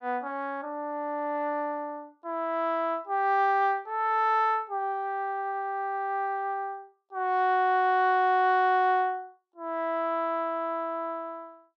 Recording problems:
none

